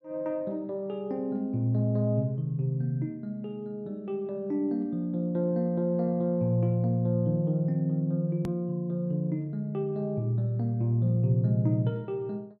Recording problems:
edit click; at 8.5 s

